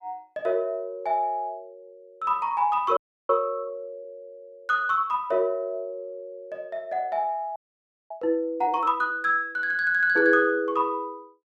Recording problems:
audio freezing; at 3 s and at 7.5 s for 0.5 s

